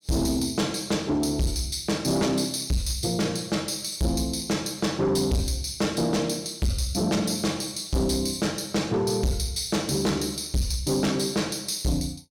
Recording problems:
distorted audio; soft clipping, signal-to-distortion ratio 7 dB

